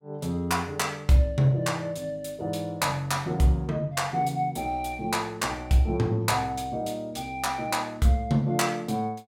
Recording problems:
none

